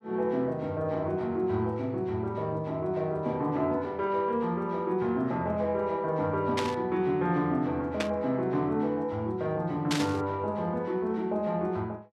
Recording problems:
burst of static; at 6.5 s, at 8 s and at 10 s; peak +3 dB vs average level

